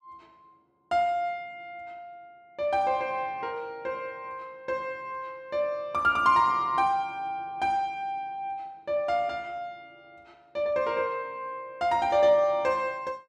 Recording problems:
none

